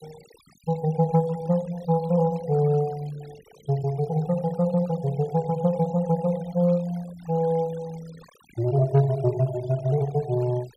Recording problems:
denoising artefacts; signal-to-artefact ratio 24 dB

